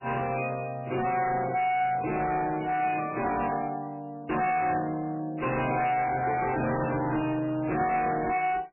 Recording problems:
lossy compression; AAC, then MP3, log-spectral distance 5 dB, nothing above 2.4 kHz
distortion; hard clipping, uneven, signal-to-distortion ratio 6 dB

